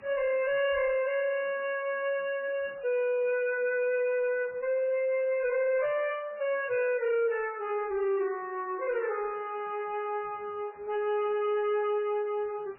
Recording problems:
codec artefacts; MP3, log-spectral distance 3 dB, nothing above 2.5 kHz
distorted audio; soft clipping, signal-to-distortion ratio 11 dB
hiss; SNR 27 dB

